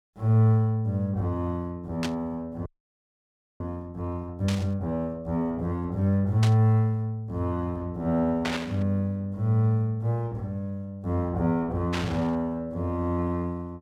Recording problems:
burst of static; 5 times, first at 2 s; peak 0 dB vs average level
frozen audio; at 2.5 s for 1 s

